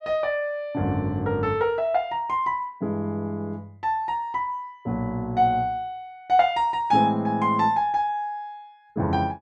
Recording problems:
none

